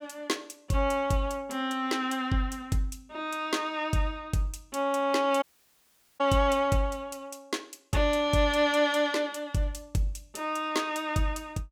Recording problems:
audio cutting out; at 5.5 s for 1 s

